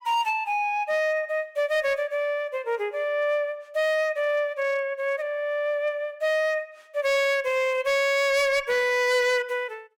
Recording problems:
distorted audio; hard clipping, signal-to-distortion ratio 11 dB

